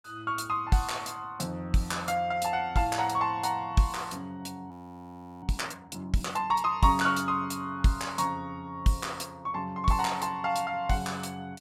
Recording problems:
frozen audio; at 4.5 s for 0.5 s

